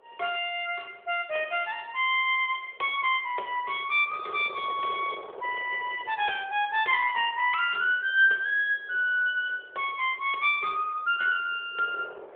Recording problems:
telephone audio; 340 Hz to 3.7 kHz, AMR-NB
wind noise; below 780 Hz, SNR 22 dB

